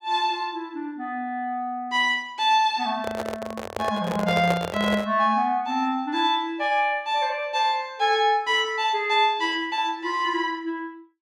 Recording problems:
microphone handling noise; from 3 to 5 s; peak +1 dB vs average level

